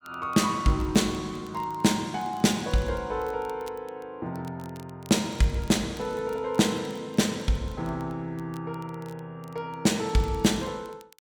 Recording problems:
crackle; vinyl, SNR 27 dB

